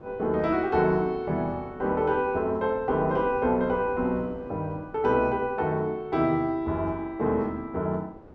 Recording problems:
wind noise; below 520 Hz, SNR 20 dB

